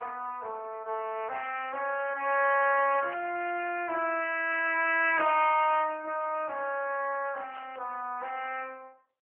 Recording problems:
telephone audio; 320 Hz to 3 kHz, AMR-NB
static burst; at 3 s, at 4.5 s and at 7.5 s; peak -12 dB vs average level

